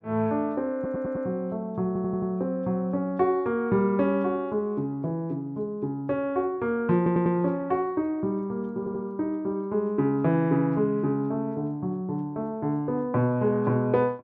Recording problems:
audio stuttering; 4 times, first at 1 s

